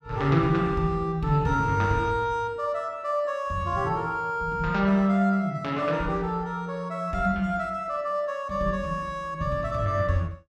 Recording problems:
none

